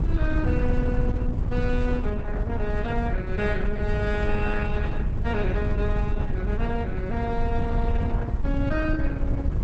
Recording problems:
codec artefacts; Opus, log-spectral distance 2 dB, nothing above 8 kHz
wind noise; below 100 Hz, SNR -3 dB

